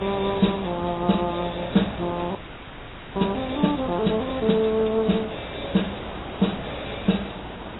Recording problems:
codec artefacts; AAC, log-spectral distance 16 dB, nothing above 3.9 kHz
mains hum; 60 Hz, harmonics up to 420 Hz, SNR 21 dB
background hiss; SNR 10 dB
frozen audio; at 2.5 s for 1 s

